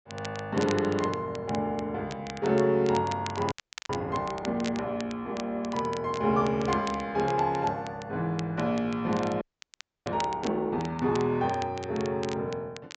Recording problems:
low-pass filter; nothing above 8 kHz
crackle; vinyl, SNR 16 dB
frozen audio; at 3.5 s and at 9.5 s for 0.5 s

